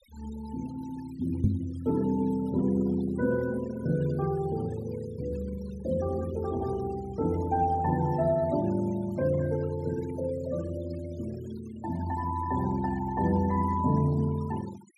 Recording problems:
noise reduction artefacts; signal-to-artefact ratio 19 dB
microphone bump; at 1.5 s; peak +8 dB vs average level

